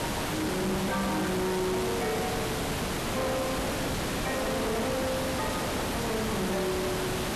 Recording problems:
distorted audio; soft clipping, signal-to-distortion ratio 5 dB
hiss; slope -5 dB per octave, SNR 1 dB
microphone handling noise; from 3 to 6 s; peak +1 dB vs average level

